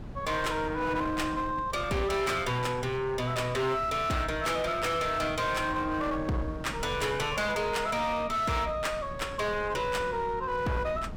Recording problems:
distorted audio; hard clipping, signal-to-distortion ratio 11 dB
wind on the microphone; below 250 Hz, SNR 14 dB

